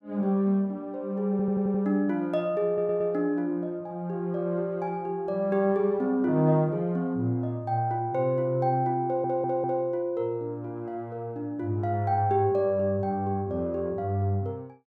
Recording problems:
audio stuttering; at 1.5 s, at 2.5 s and at 9 s

